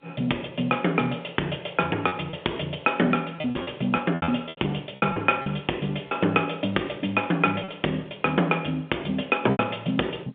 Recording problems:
telephone audio; 220 Hz to 3.5 kHz, G.711
distortion; soft clipping, signal-to-distortion ratio 15 dB
packet loss; 7% of the sound replaced, filled with repeated pitch periods

